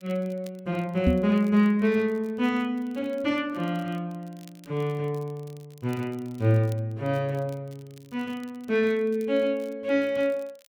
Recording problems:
crackling; vinyl, SNR 29 dB
microphone thump; at 1 s; peak +7 dB vs average level

